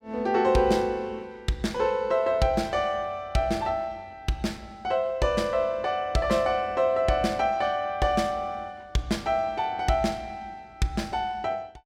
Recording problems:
none

